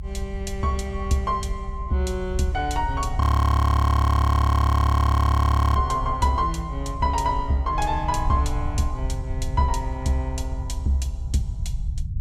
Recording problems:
low-frequency rumble; below 76 Hz, SNR 5 dB
frozen audio; at 3 s for 2.5 s

